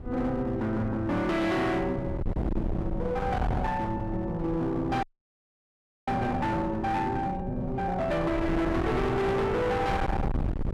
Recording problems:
distortion; hard clipping, signal-to-distortion ratio 6 dB
wind on the microphone; below 330 Hz, SNR 6 dB
audio freezing; at 5 s for 1 s

